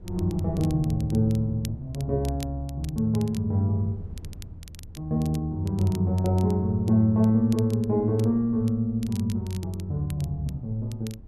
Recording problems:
wind on the microphone; below 130 Hz, SNR 20 dB
crackling; vinyl, SNR 23 dB

